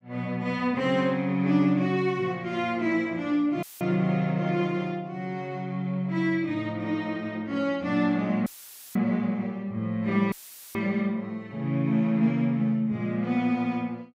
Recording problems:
audio cutting out; at 3.5 s, at 8.5 s and at 10 s; filled with static

